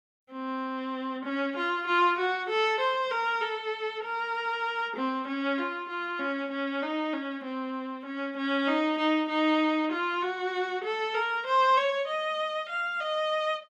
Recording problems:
none

